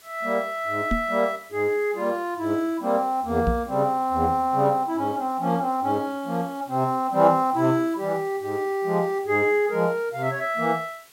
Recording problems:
background hiss; slope 0 dB per octave, SNR 26 dB
knock on the microphone; at 1 s and at 3.5 s; peak +2 dB vs average level

